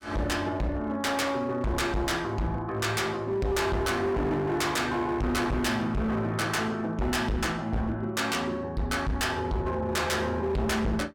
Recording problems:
distorted audio; hard clipping, signal-to-distortion ratio 7 dB

